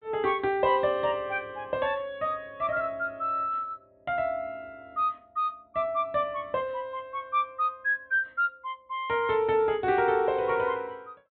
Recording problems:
low-pass filter; nothing above 4 kHz

